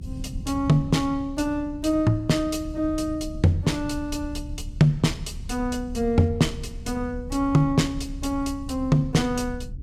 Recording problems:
rumble; below 100 Hz, SNR 12 dB

